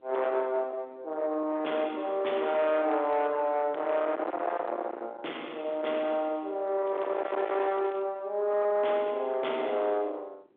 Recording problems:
phone line; 280 Hz to 3.6 kHz, G.726
distorted audio; soft clipping, signal-to-distortion ratio 10 dB
wind on the microphone; below 870 Hz, SNR 12 dB
crackle; from 7 to 8 s; loose cable, SNR 29 dB

